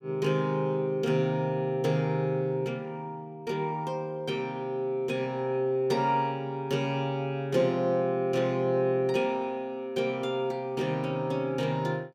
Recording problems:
none

